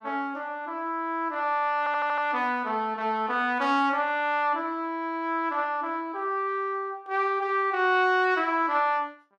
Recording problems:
audio stuttering; at 2 s

